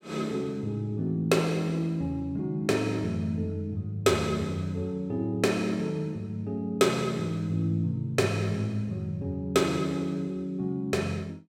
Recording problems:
none

